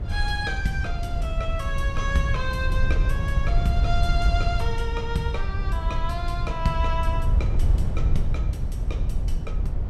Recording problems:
low-frequency rumble; below 82 Hz, SNR -3 dB

